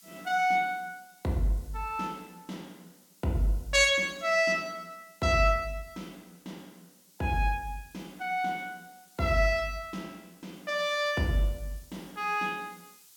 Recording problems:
hiss; SNR 27 dB

